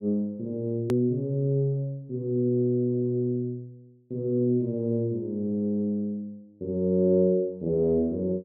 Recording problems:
click at an edit; at 1 s

